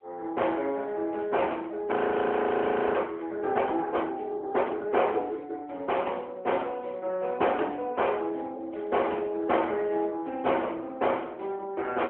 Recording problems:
phone line; 300 Hz to 3.1 kHz, AMR-NB
frozen audio; at 2 s for 1 s

